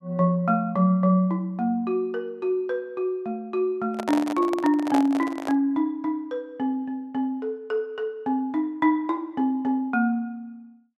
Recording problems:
microphone handling noise; from 4 to 5.5 s; peak 0 dB vs average level

